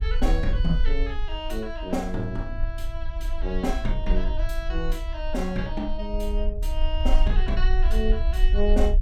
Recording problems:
rumble; below 44 Hz, strongest tone 20 Hz, SNR -2 dB

